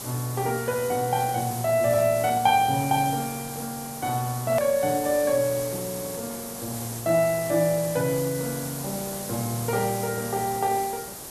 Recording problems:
background hiss; SNR 9 dB
click at an edit; at 4.5 s

